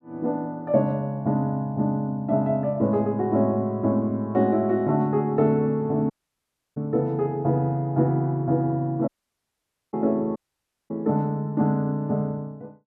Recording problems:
audio cutting out; at 6 s for 0.5 s, at 9 s for 1 s and at 10 s for 0.5 s

